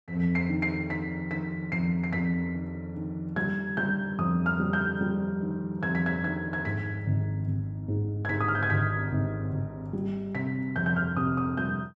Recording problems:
none

